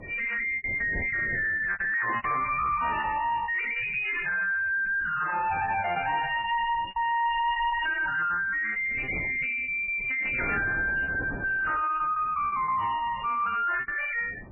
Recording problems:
lossy compression; MP3, log-spectral distance 4 dB, nothing above 2.4 kHz
distortion; soft clipping, signal-to-distortion ratio 5 dB
wind on the microphone; below 610 Hz, SNR 13 dB
packet loss; 9% of the sound replaced, filled with repeated pitch periods

